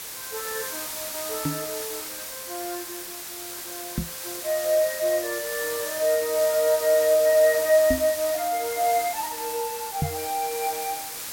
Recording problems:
background hiss; slope 0 dB per octave, SNR 7 dB
microphone bump; 4 times, first at 1.5 s; peak +2 dB vs average level

